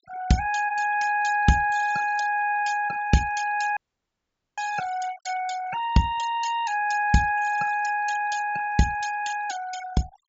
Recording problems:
treble cut off; nothing above 8 kHz
denoising artefacts; signal-to-artefact ratio 15 dB
audio cutting out; at 4 s for 1 s

